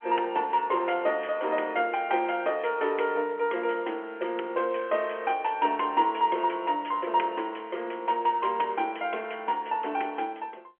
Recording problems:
phone line; 280 Hz to 3.2 kHz, G.711

